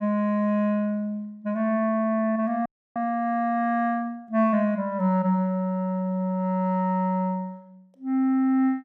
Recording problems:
frozen audio; at 2.5 s

